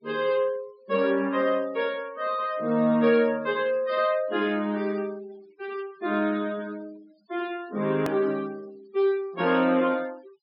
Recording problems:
treble missing; nothing above 5.5 kHz
denoising artefacts; signal-to-artefact ratio 25 dB
hard cut with a click; at 8 s

